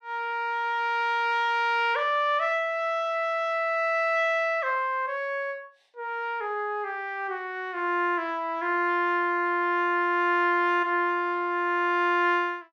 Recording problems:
none

